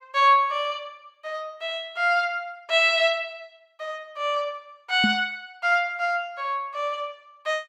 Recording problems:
knock on the microphone; at 5 s; peak +3 dB vs average level

